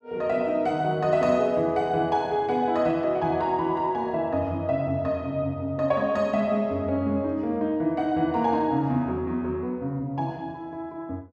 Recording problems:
none

